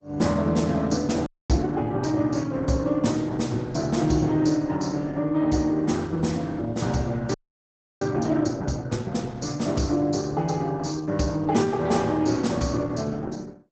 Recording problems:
lossy compression; Opus, log-spectral distance 4 dB, nothing above 7.6 kHz
frozen audio; at 1.5 s and at 7.5 s for 0.5 s

